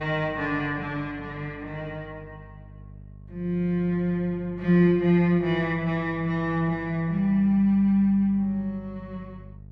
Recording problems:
electrical hum; 50 Hz, harmonics up to 450 Hz, SNR 21 dB

